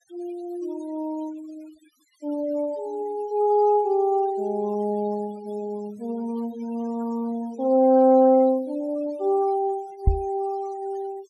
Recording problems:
noise reduction artefacts; signal-to-artefact ratio 25 dB
microphone bump; at 10 s; peak +7 dB vs average level

